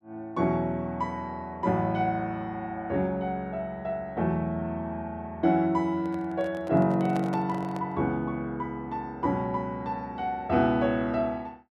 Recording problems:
handling noise; from 6 to 8 s; peak -5 dB vs average level

